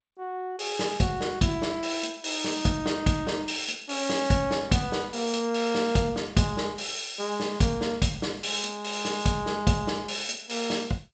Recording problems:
codec artefacts; G.722, log-spectral distance 5 dB, nothing above 7.6 kHz

